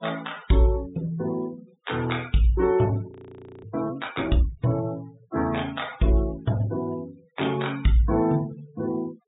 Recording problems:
low-pass filter; nothing above 4 kHz
noise reduction artefacts; signal-to-artefact ratio 20 dB
frozen audio; at 3 s for 0.5 s

